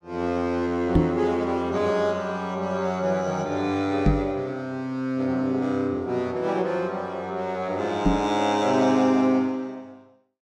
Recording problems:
microphone thump; at 1 s, at 4 s and at 8 s; peak +8 dB vs average level

